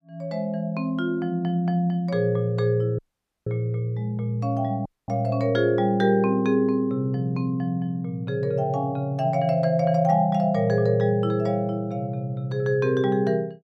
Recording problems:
audio cutting out; at 3 s and at 5 s

